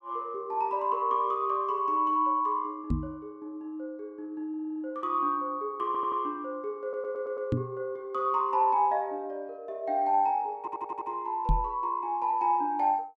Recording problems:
microphone thump; at 3 s, at 7.5 s and at 11 s; peak +5 dB vs average level
audio stuttering; 4 times, first at 4.5 s

